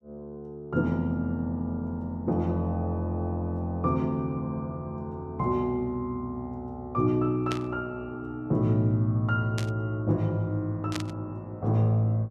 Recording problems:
static burst; at 7.5 s, at 9.5 s and at 11 s; peak -1 dB vs average level

